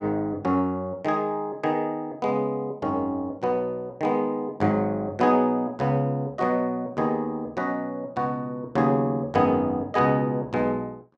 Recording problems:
none

